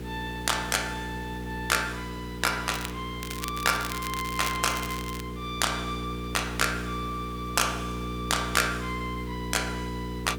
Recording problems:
hum; 60 Hz, harmonics up to 480 Hz, SNR 7 dB
hiss; slope -4 dB per octave, SNR 18 dB
crackle; at 2.5 s and from 3 to 5 s; loose cable, SNR 8 dB

